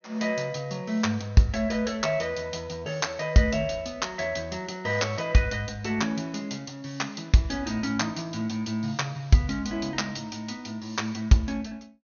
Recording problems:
treble cut off; nothing above 6.4 kHz

